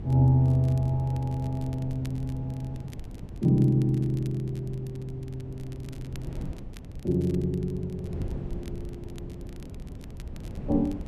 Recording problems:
wind on the microphone; below 180 Hz, SNR 13 dB
crackle; vinyl, SNR 28 dB

